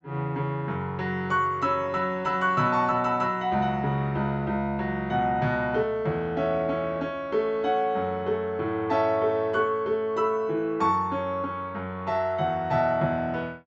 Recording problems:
treble cut off; nothing above 8 kHz

